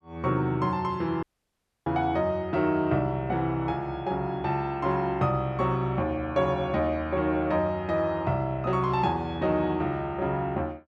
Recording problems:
audio cutting out; at 1 s for 0.5 s

